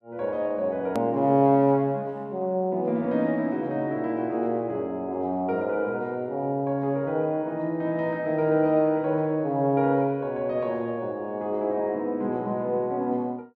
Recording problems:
hard cut with a click; at 1 s

